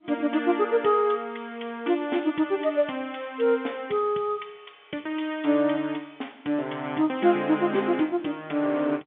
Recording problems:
phone line; 240 Hz to 3.6 kHz, G.711

